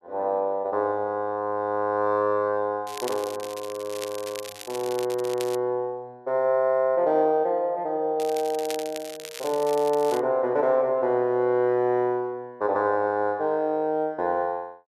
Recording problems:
crackle; from 3 to 5.5 s and from 8 to 10 s; loose cable, SNR 15 dB

